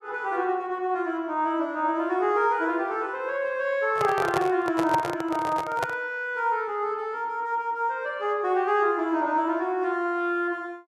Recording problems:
microphone handling noise; from 4 to 6 s; peak +1 dB vs average level

